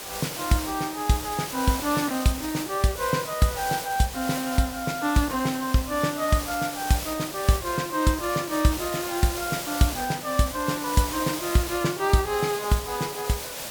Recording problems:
background hiss; SNR 7 dB

